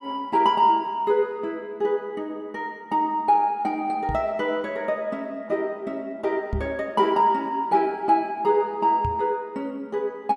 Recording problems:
microphone thump; at 4 s, at 6.5 s and at 9 s; peak -1 dB vs average level

